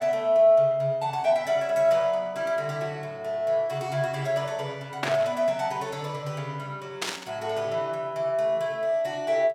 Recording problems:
static burst; at 5 s and at 7 s; peak +1 dB vs average level

